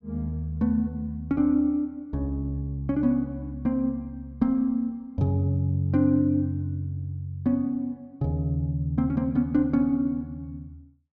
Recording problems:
none

